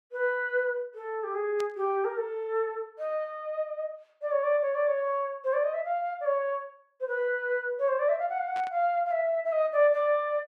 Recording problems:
static burst; at 1.5 s and at 8.5 s; peak -10 dB vs average level

